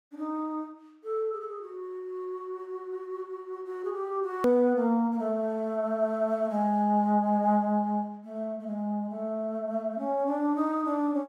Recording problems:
hard cut with a click; at 4.5 s

